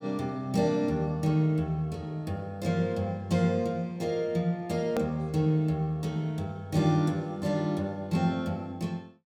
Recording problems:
hard cut with a click; at 5 s

